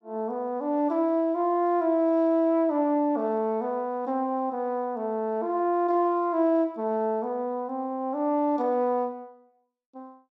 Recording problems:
none

